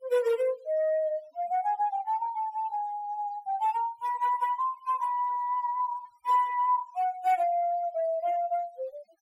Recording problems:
noise reduction artefacts; signal-to-artefact ratio 22 dB

